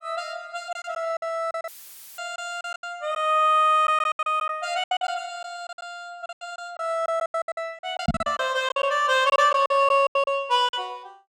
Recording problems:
lost packets; 15% of the sound replaced, filled with silence
audio cutting out; at 1.5 s for 0.5 s; filled with static
microphone thump; at 8 s; peak +4 dB vs average level

